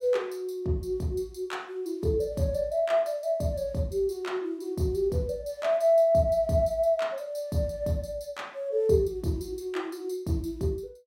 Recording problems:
none

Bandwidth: 16.5 kHz